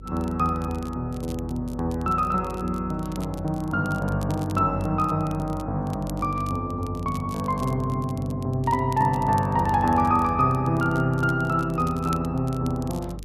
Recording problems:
hum; 50 Hz, harmonics up to 500 Hz, SNR 16 dB
crackle; vinyl, SNR 23 dB

